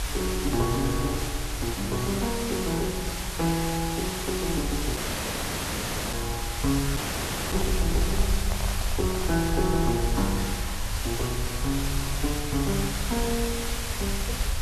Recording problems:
hum; 60 Hz, harmonics up to 600 Hz, SNR 17 dB
hiss; SNR 3 dB
low-frequency rumble; below 68 Hz, SNR 4 dB
dropout; at 5 s for 1 s and at 7 s for 0.5 s
microphone handling noise; from 7.5 to 10 s; peak -4 dB vs average level

